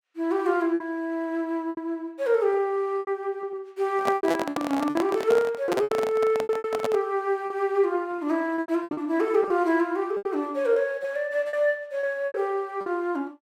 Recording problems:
lost packets; 11% of the sound replaced, filled with repeated pitch periods
handling noise; from 4 to 7 s; peak +1 dB vs average level

